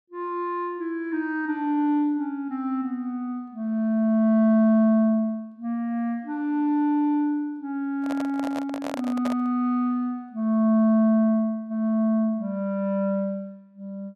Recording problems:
handling noise; from 8 to 9.5 s; peak -4 dB vs average level

